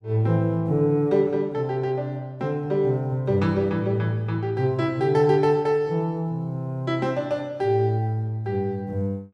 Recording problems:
none

